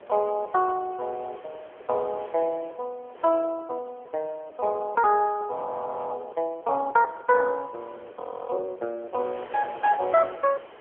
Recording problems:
telephone audio; 340 Hz to 3.3 kHz, AMR-NB
wind on the microphone; below 1.4 kHz, SNR 21 dB
frozen audio; at 5.5 s for 0.5 s and at 8 s

